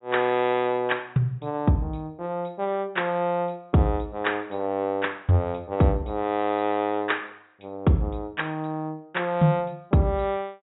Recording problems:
treble missing; nothing above 3.8 kHz

